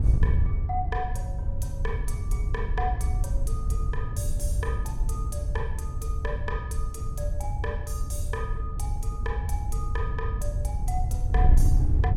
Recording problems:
wind noise; below 82 Hz, SNR -8 dB

